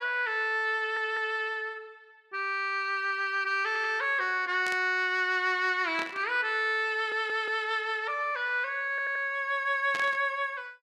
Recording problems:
audio stuttering; 4 times, first at 1 s
static burst; at 4.5 s, at 6 s and at 10 s; peak -5 dB vs average level

